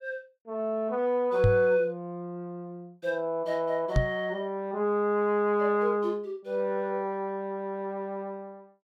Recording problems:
knock on the microphone; at 1.5 s and at 4 s; peak +7 dB vs average level

